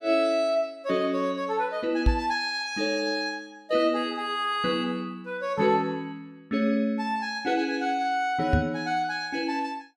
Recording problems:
knock on the microphone; at 2 s and at 8.5 s; peak +7 dB vs average level

